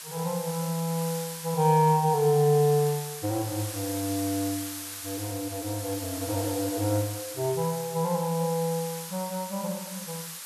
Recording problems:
background hiss; SNR 9 dB

